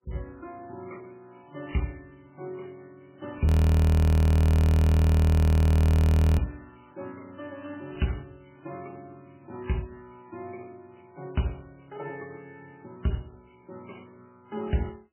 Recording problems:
codec artefacts; MP3, then MP3, log-spectral distance 6 dB, nothing above 16.5 kHz
audio freezing; at 3.5 s for 3 s

